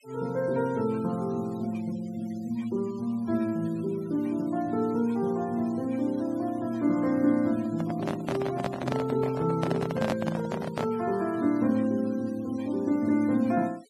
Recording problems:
noise reduction artefacts; signal-to-artefact ratio 21 dB
handling noise; from 7.5 to 11 s; peak +2 dB vs average level

